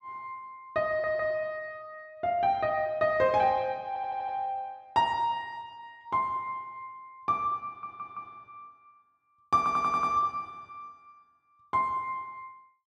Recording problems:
stutter; 4 times, first at 1 s

